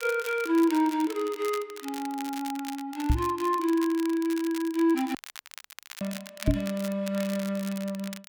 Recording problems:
crackle; vinyl, SNR 14 dB
microphone thump; at 3 s and at 6.5 s; peak +8 dB vs average level
audio cutting out; at 5 s for 1 s

